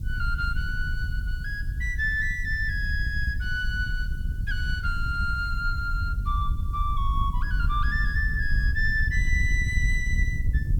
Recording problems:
hiss; SNR 29 dB
wind noise; below 76 Hz, SNR 0 dB

